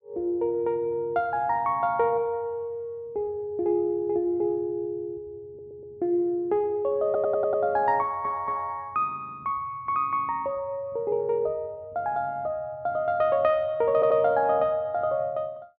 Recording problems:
audio stuttering; 4 times, first at 5.5 s

